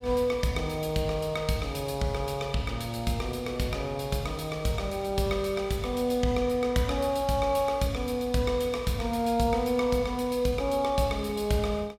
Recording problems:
none

